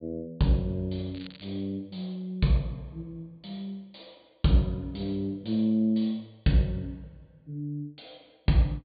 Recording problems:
treble missing; nothing above 4.5 kHz
crackling; at 1 s; loose cable, SNR 21 dB

